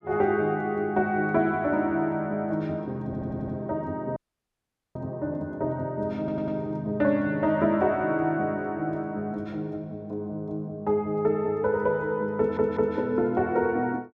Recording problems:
stutter; at 3 s, at 6 s and at 12 s
audio cutting out; at 4 s for 1 s

